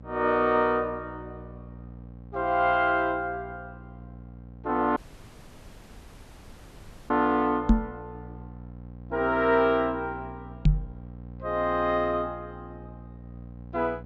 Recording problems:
treble cut off; nothing above 8 kHz
hum; 60 Hz, harmonics up to 780 Hz, SNR 18 dB
dropout; at 5 s for 2 s
microphone thump; at 7.5 s and at 11 s; peak +9 dB vs average level

